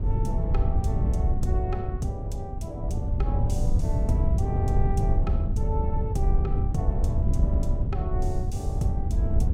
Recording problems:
wind noise; below 100 Hz, SNR -9 dB

